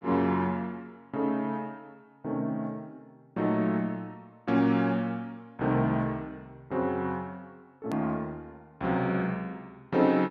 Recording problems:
click at an edit; at 8 s

